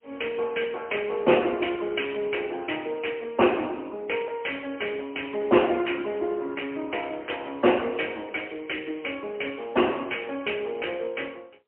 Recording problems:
phone line; 260 Hz to 3.1 kHz, AMR-NB, then MP3

